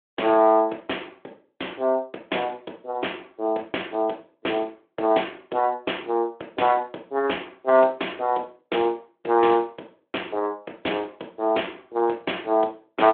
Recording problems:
telephone audio; 300 Hz to 3.5 kHz, Speex

